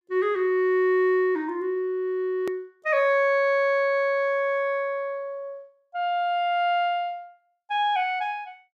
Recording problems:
edit click; at 2.5 s

